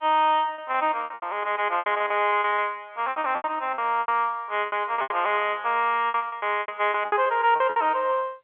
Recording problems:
phone line; 280 Hz to 3.5 kHz, G.711
packet loss; 17% of the sound replaced, filled with repeated pitch periods

